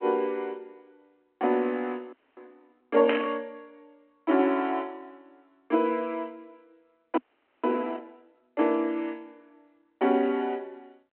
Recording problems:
phone line; 240 Hz to 3.4 kHz, G.726
audio freezing; at 2 s and at 7 s
burst of static; at 3 s; peak +2 dB vs average level

